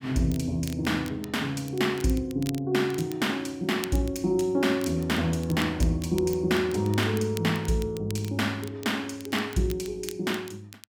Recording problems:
crackle; vinyl, SNR 18 dB

